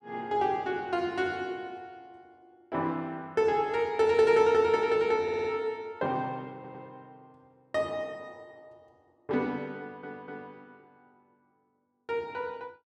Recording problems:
audio stuttering; at 5 s, at 6.5 s and at 10 s

